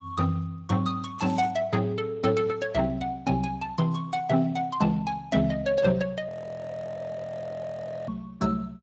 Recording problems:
lossy codec; AAC, then Speex, log-spectral distance 3 dB, nothing above 7.3 kHz
crackling; at 1 s; loose cable, SNR 25 dB
audio freezing; at 6.5 s for 2 s

